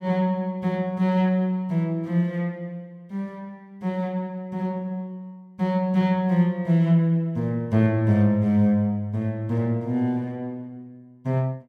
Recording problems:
none

